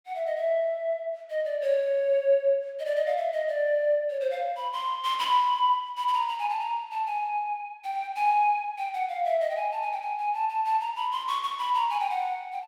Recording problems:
none

